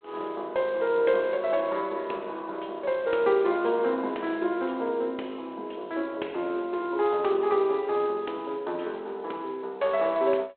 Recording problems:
phone line; 280 Hz to 3.7 kHz, G.726

